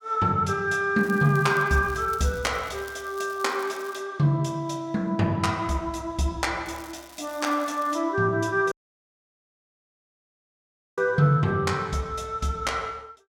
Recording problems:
crackle; from 1 to 4 s and from 6.5 to 8 s; loose cable, SNR 22 dB
dropout; at 8.5 s for 2.5 s

